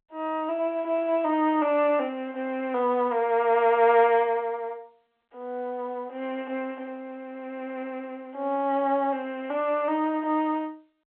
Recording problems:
phone line; 280 Hz to 3.5 kHz, G.711

